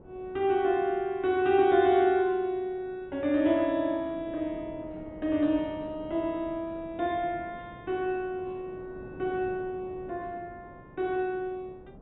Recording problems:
treble missing; nothing above 3.9 kHz
wind noise; below 490 Hz, SNR 20 dB

